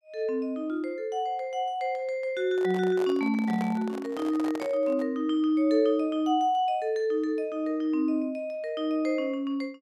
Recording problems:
handling noise; from 2.5 to 5 s; peak -6 dB vs average level

